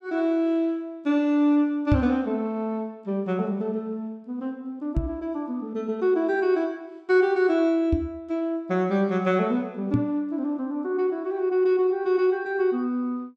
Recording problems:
knock on the microphone; 4 times, first at 2 s; peak +6 dB vs average level

